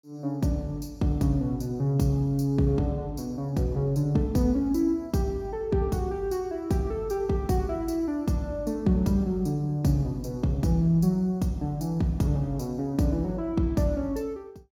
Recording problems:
none

